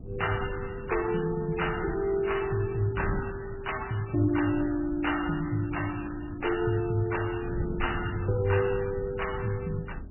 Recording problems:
lossy compression; MP3, log-spectral distance 6 dB, nothing above 2.9 kHz
wind on the microphone; below 190 Hz, SNR 11 dB

